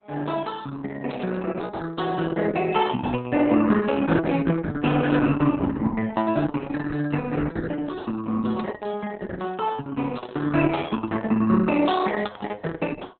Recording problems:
lossy codec; Opus, log-spectral distance 4 dB, nothing above 4 kHz
burst of static; 4 times, first at 1 s; peak -12 dB vs average level

